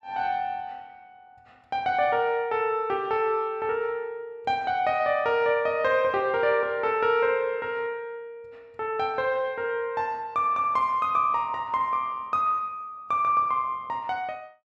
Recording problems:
none

